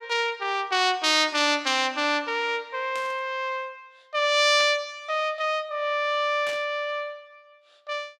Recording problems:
static burst; at 3 s, at 4.5 s and at 6.5 s; peak -9 dB vs average level

